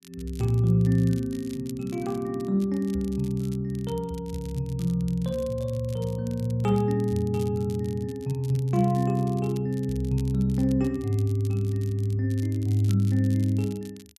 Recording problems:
crackle; vinyl, SNR 24 dB

